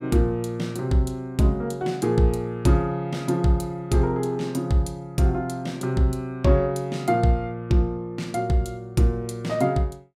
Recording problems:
none

